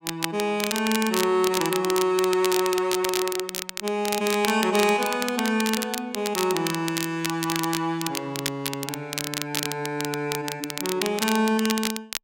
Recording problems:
crackle; vinyl, SNR 5 dB

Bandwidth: 16 kHz